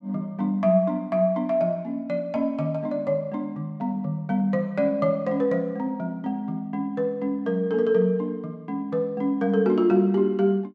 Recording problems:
none

